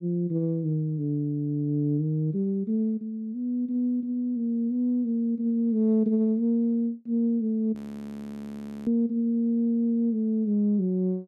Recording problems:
frozen audio; at 8 s for 1 s

